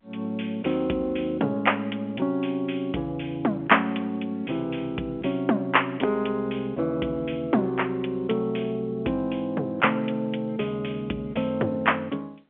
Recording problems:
phone line; 260 Hz to 3.3 kHz, G.711

